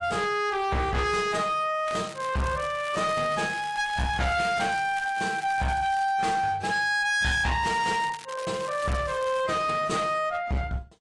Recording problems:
codec artefacts; AAC, log-spectral distance 3 dB, nothing above 10.1 kHz
distorted audio; hard clipping, uneven, signal-to-distortion ratio 7 dB
crackling; from 2 to 6 s and from 7.5 to 9.5 s; loose cable, SNR 17 dB

